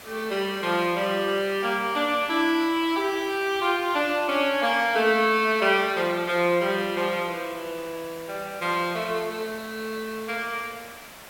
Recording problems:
hiss; SNR 18 dB

